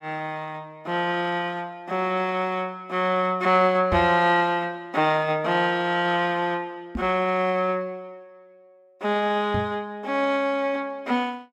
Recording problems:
knock on the microphone; at 4 s, at 7 s and at 9.5 s; peak -1 dB vs average level

